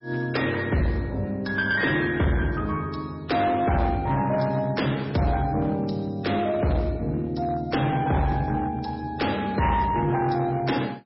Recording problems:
lossy codec; MP3, log-spectral distance 3 dB, nothing above 5.5 kHz
distortion; hard clipping, uneven, signal-to-distortion ratio 10 dB

